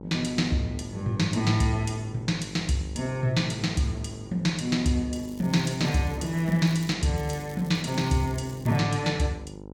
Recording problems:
hum; 50 Hz, harmonics up to 1.1 kHz, SNR 16 dB
crackling; from 5 to 7 s and from 7 to 9 s; loose cable, SNR 23 dB

